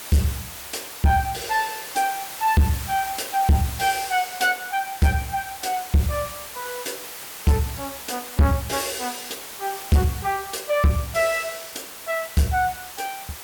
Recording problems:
distorted audio; soft clipping, signal-to-distortion ratio 11 dB
background hiss; slope -1 dB per octave, SNR 10 dB

